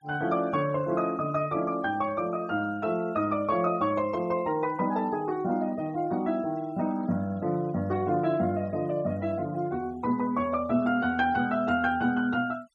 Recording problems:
denoising artefacts; signal-to-artefact ratio 26 dB

